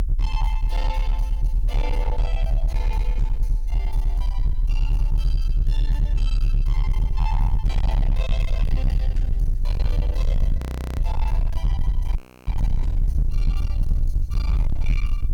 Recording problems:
distortion; hard clipping, uneven, signal-to-distortion ratio 7 dB
background hiss; SNR 26 dB
low-frequency rumble; below 50 Hz, strongest tone 32 Hz, SNR -12 dB
audio freezing; at 11 s and at 12 s

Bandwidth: 18 kHz